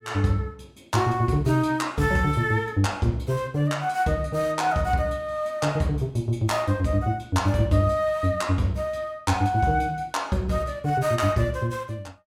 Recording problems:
none

